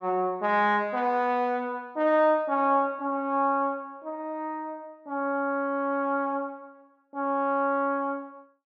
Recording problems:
none

